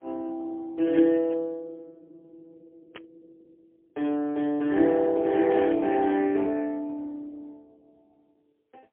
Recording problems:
telephone audio; 240 Hz to 3.2 kHz, AMR-NB, then MP3
static burst; at 1 s, at 3 s and at 5.5 s; peak -12 dB vs average level

